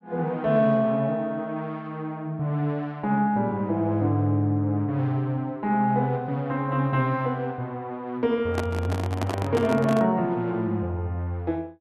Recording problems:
handling noise; from 8.5 to 10 s; peak 0 dB vs average level

